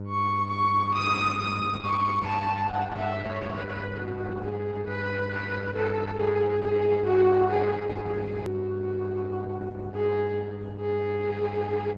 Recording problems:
codec artefacts; Opus, log-spectral distance 4 dB
mains hum; 50 Hz, harmonics up to 900 Hz, SNR 10 dB
hard cut with a click; at 8.5 s

